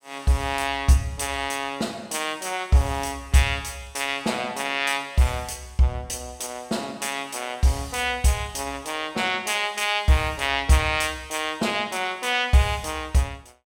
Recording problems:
none

